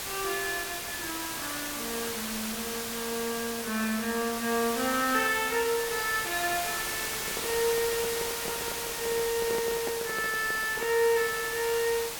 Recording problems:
background hiss; slope -1 dB per octave, SNR 3 dB
handling noise; from 7 to 11 s; peak -2 dB vs average level

